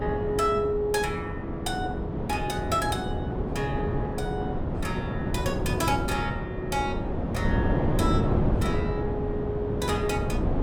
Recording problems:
wind on the microphone; below 360 Hz, SNR -1 dB

